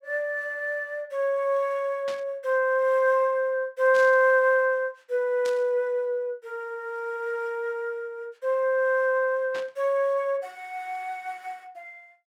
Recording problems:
static burst; 4 times, first at 2 s; peak -10 dB vs average level

